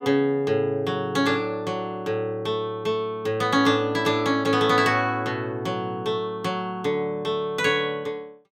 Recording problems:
none

